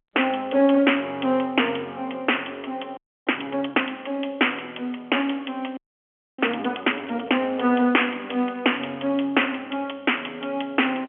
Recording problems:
telephone audio; 220 Hz to 3.3 kHz, G.711
audio freezing; at 3 s and at 6 s for 0.5 s
crackling; from 5.5 to 9 s; loose cable, SNR 28 dB

